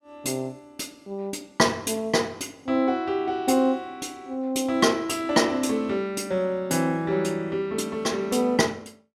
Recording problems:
none

